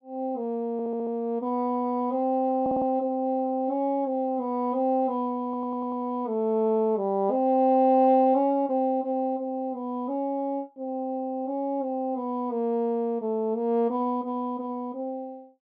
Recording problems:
audio stuttering; at 0.5 s, at 2.5 s and at 5.5 s

